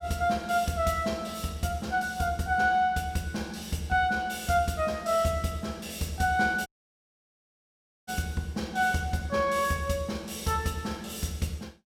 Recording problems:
dropout; at 6.5 s for 1.5 s

